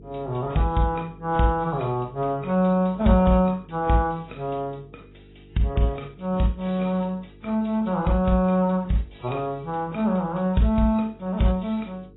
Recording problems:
lossy codec; AAC, then AAC, log-spectral distance 3 dB, nothing above 3.9 kHz
electrical hum; 50 Hz, harmonics up to 450 Hz, SNR 25 dB

